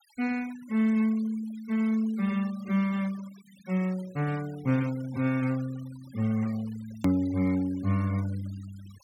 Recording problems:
denoising artefacts; signal-to-artefact ratio 21 dB
click at an edit; at 7 s

